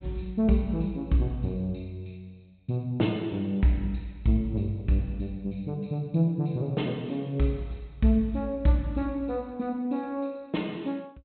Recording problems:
treble missing; nothing above 4 kHz

